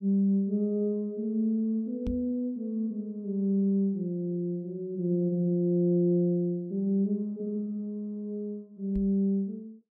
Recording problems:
microphone bump; at 2 s and at 9 s; peak -2 dB vs average level

